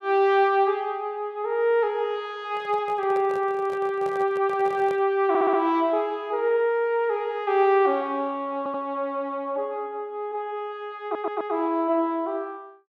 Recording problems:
microphone handling noise; from 2.5 to 5 s; peak -10 dB vs average level
stutter; at 5.5 s, at 8.5 s and at 11 s

